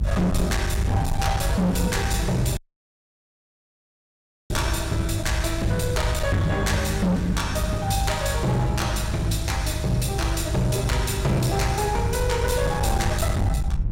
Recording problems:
distortion; hard clipping, signal-to-distortion ratio 8 dB
hum; 50 Hz, harmonics up to 350 Hz, SNR 7 dB
rumble; below 84 Hz, SNR 5 dB
dropout; at 2.5 s for 2 s

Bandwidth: 16 kHz